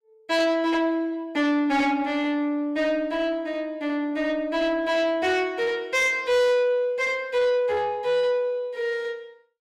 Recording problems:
distortion; soft clipping, signal-to-distortion ratio 10 dB

